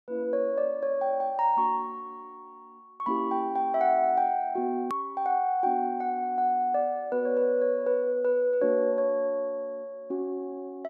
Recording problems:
click at an edit; at 5 s

